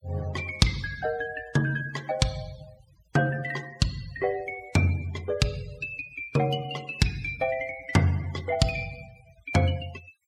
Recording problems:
denoising artefacts; signal-to-artefact ratio 20 dB

